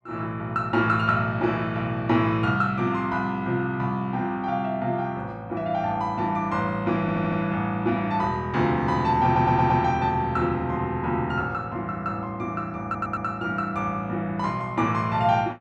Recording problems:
audio stuttering; at 7 s, at 9 s and at 13 s

